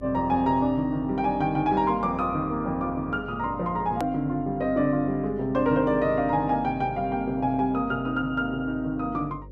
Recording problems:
hum; 50 Hz, harmonics up to 550 Hz, SNR 19 dB
click at an edit; at 4 s

